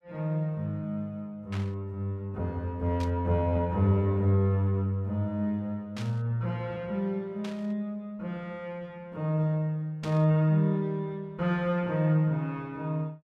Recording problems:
burst of static; 5 times, first at 1.5 s; peak -9 dB vs average level

